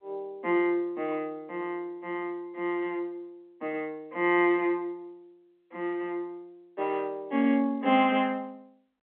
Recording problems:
phone line; 220 Hz to 3.4 kHz, G.711

